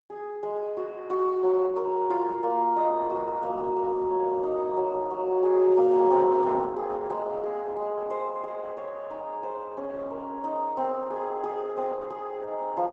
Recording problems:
lossy compression; Opus, log-spectral distance 2 dB, nothing above 7.6 kHz

